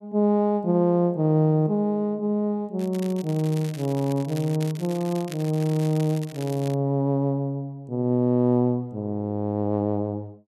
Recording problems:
crackle; from 3 to 7 s; loose cable, SNR 19 dB

